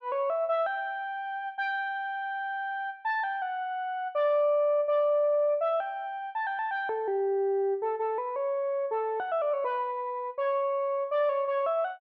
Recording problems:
none

